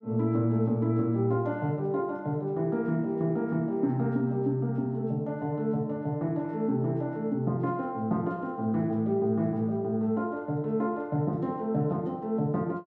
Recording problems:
none

